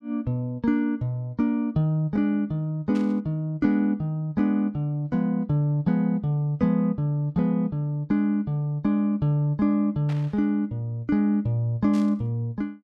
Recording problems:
static burst; at 3 s, at 10 s and at 12 s; peak -14 dB vs average level

